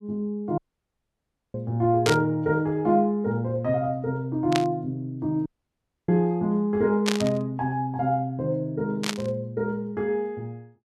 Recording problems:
audio cutting out; at 0.5 s for 1 s and at 5.5 s for 0.5 s
burst of static; 4 times, first at 2 s; peak +4 dB vs average level

